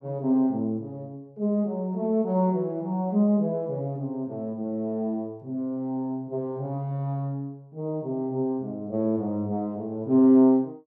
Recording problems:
none

